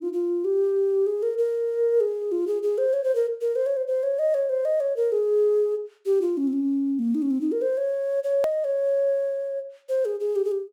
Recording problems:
edit click; at 8.5 s

